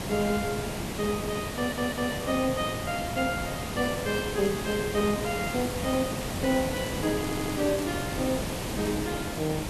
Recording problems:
hiss; SNR 3 dB
stutter; at 1.5 s and at 7 s
crackle; from 4 to 6 s and from 6 to 9 s; loose cable, SNR 19 dB

